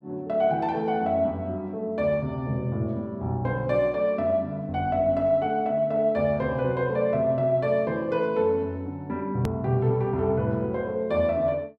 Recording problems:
hard cut with a click; at 9.5 s

